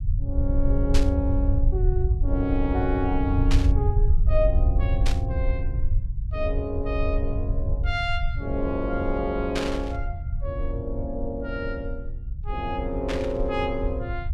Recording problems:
low-frequency rumble; below 78 Hz, SNR -2 dB
burst of static; 5 times, first at 1 s; peak +3 dB vs average level

